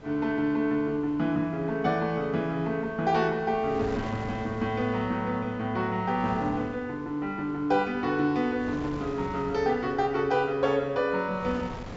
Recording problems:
treble missing; nothing above 8 kHz
wind noise; below 780 Hz, SNR 16 dB

